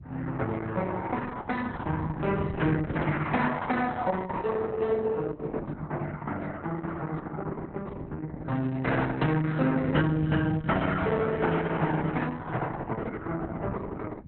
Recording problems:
lossy compression; Opus, log-spectral distance 3 dB, nothing above 4 kHz
wind noise; below 170 Hz, SNR 10 dB

